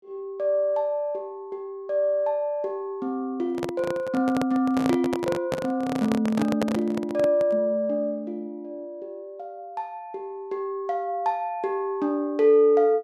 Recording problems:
microphone handling noise; from 3.5 to 7.5 s; peak +2 dB vs average level

